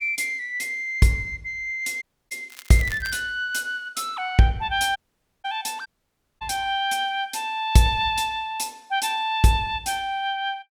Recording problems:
dropout; at 2 s, at 5 s and at 6 s for 0.5 s
crackling; at 2.5 s; loose cable, SNR 17 dB

